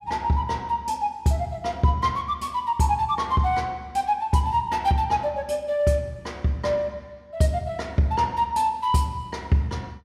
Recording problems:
none

